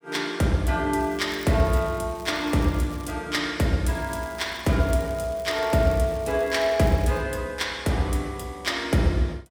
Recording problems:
crackling; from 1 to 3 s and from 4 to 7 s; loose cable, SNR 23 dB

